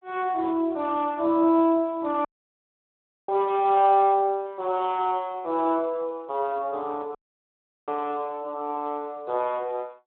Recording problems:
phone line; 280 Hz to 3.7 kHz, Speex
dropout; at 2.5 s for 1 s and at 7 s for 0.5 s

